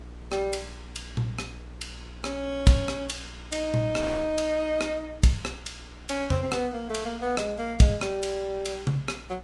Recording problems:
lossy compression; Vorbis, log-spectral distance 3 dB, nothing above 10.7 kHz
hum; 60 Hz, harmonics up to 480 Hz, SNR 19 dB
wind on the microphone; below 1.3 kHz, SNR 21 dB

